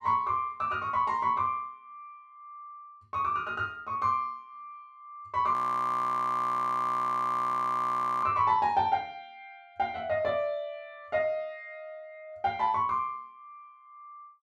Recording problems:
audio freezing; at 5.5 s for 2.5 s

